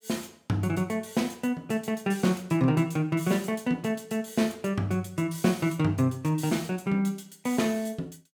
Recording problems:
none

